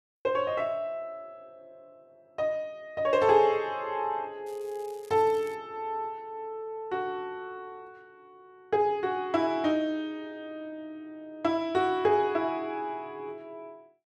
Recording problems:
crackle; from 4.5 to 5.5 s; loose cable, SNR 26 dB

